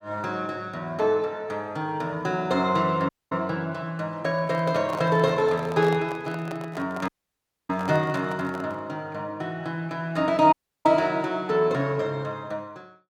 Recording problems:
dropout; at 3 s, at 7 s for 0.5 s and at 11 s
microphone handling noise; from 4.5 to 9 s; peak -6 dB vs average level

